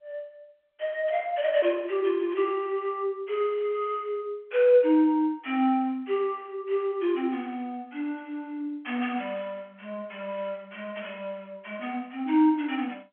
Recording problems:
phone line; 280 Hz to 3.4 kHz, G.711

